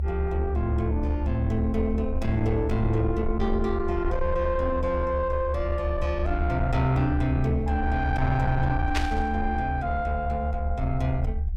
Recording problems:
distorted audio; soft clipping, signal-to-distortion ratio 11 dB
low-frequency rumble; below 74 Hz, strongest tone 70 Hz, SNR 3 dB
burst of static; at 9 s; peak +2 dB vs average level

